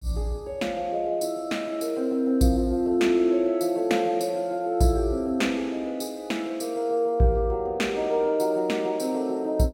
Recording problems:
none

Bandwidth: 16 kHz